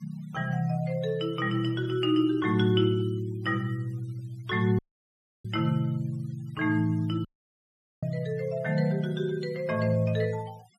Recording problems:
denoising artefacts; signal-to-artefact ratio 27 dB
audio cutting out; at 5 s for 0.5 s and at 7.5 s for 1 s

